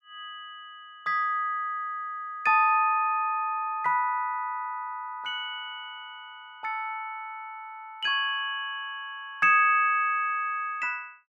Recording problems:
none

